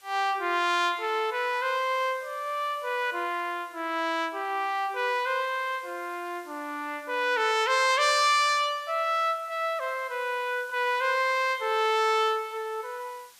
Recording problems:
background hiss; slope +2 dB per octave, SNR 26 dB

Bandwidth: 14.5 kHz